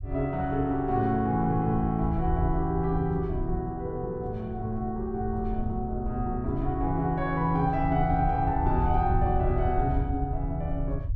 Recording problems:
rumble; below 82 Hz, SNR 6 dB

